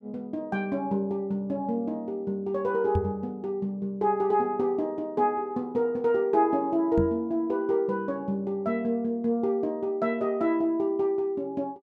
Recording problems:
knock on the microphone; at 3 s and at 7 s; peak +3 dB vs average level

